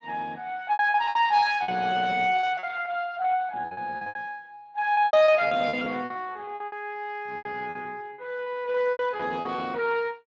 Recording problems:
lossy compression; Speex, log-spectral distance 3 dB
lost packets; 18% of the sound replaced, filled with repeated pitch periods

